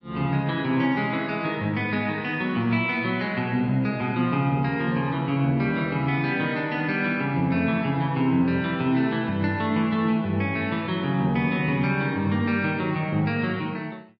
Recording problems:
codec artefacts; MP3, log-spectral distance 2 dB

